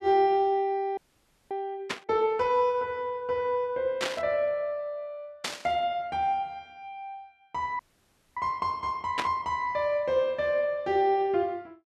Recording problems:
frozen audio; at 1 s for 0.5 s and at 8 s for 0.5 s
burst of static; 4 times, first at 2 s; peak +2 dB vs average level

